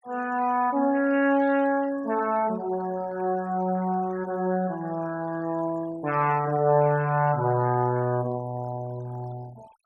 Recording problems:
denoising artefacts; signal-to-artefact ratio 21 dB

